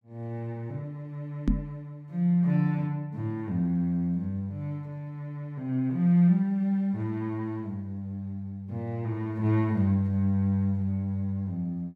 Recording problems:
knock on the microphone; at 1.5 s; peak +6 dB vs average level

